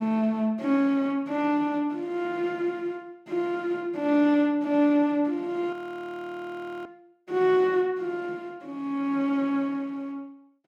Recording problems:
frozen audio; at 5.5 s for 1 s

